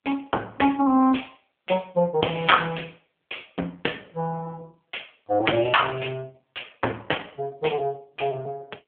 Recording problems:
telephone audio; 220 Hz to 3.3 kHz, AMR-NB

